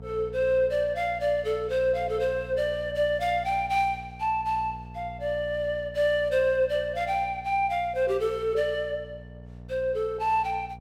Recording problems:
hum; 60 Hz, harmonics up to 900 Hz, SNR 17 dB

